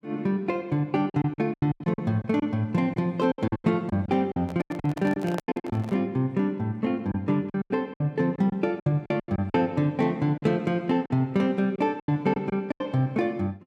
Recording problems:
lost packets; 13% of the sound replaced, filled with silence
handling noise; from 4.5 to 6 s; peak -3 dB vs average level

